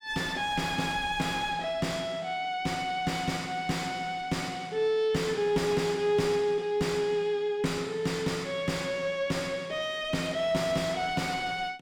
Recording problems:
distorted audio; soft clipping, signal-to-distortion ratio 4 dB

